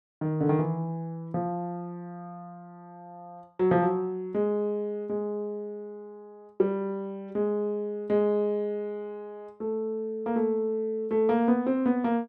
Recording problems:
none

